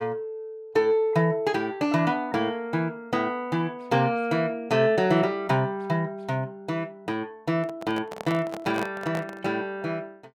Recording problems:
microphone handling noise; from 7.5 to 9.5 s; peak -3 dB vs average level

